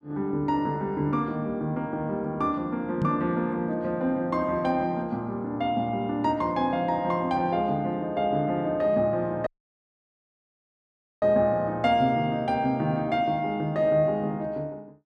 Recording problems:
knock on the microphone; at 3 s; peak +3 dB vs average level
dropout; at 9.5 s for 2 s

